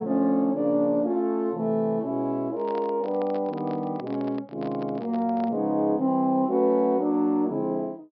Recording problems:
treble missing; nothing above 5.5 kHz
handling noise; from 2.5 to 5.5 s; peak -10 dB vs average level

